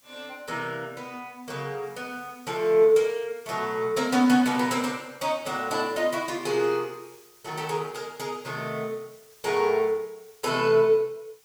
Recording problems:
hiss; slope +1 dB per octave, SNR 28 dB

